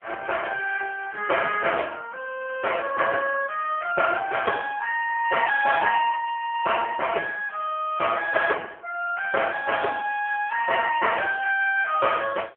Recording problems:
telephone audio; 370 Hz to 3.1 kHz, AMR-NB

